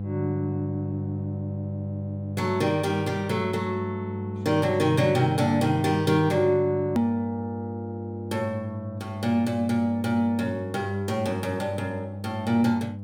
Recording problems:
electrical hum; 50 Hz, harmonics up to 600 Hz, SNR 8 dB
hard cut with a click; at 7 s

